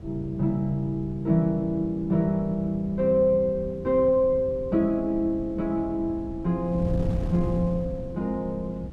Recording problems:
wind on the microphone; below 170 Hz, SNR 11 dB

